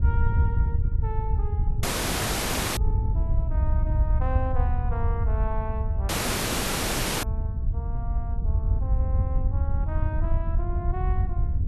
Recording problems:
wind noise; below 88 Hz, SNR -11 dB
audio cutting out; at 2 s for 1 s and at 6 s for 1 s

